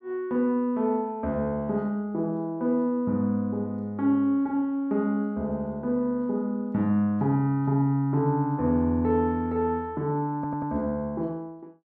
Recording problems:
audio stuttering; at 10 s

